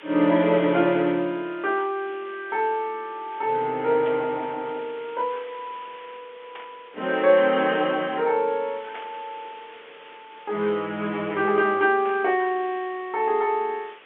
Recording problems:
phone line; 260 Hz to 3.4 kHz, G.711
hiss; SNR 23 dB
static burst; 4 times, first at 4 s; peak -11 dB vs average level

